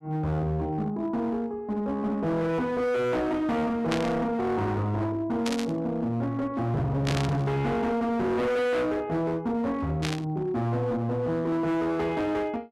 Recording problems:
distorted audio; hard clipping, signal-to-distortion ratio 7 dB
static burst; 4 times, first at 4 s; peak 0 dB vs average level

